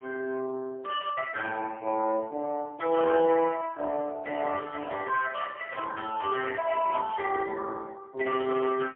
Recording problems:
telephone audio; 190 Hz to 2.9 kHz, AMR-NB, then MP3

